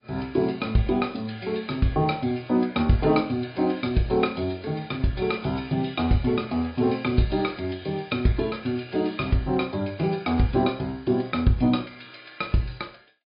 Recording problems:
treble cut off; nothing above 5 kHz
lossy compression; AAC, log-spectral distance 3 dB

